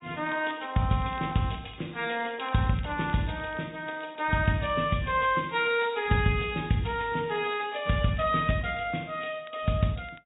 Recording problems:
treble cut off; nothing above 3.7 kHz
lossy codec; AAC, log-spectral distance 4 dB
crackle; vinyl, SNR 28 dB

